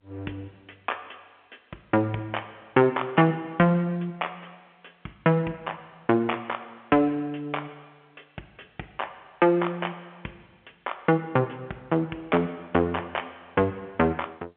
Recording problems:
telephone audio; 220 Hz to 3.2 kHz, G.711

